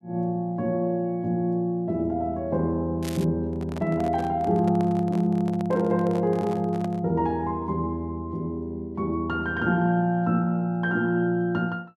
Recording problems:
crackle; at 3 s; loose cable, SNR 17 dB
handling noise; from 3.5 to 7 s; peak -8 dB vs average level

